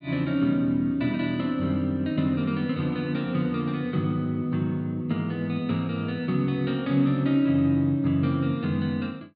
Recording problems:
treble cut off; nothing above 4.8 kHz

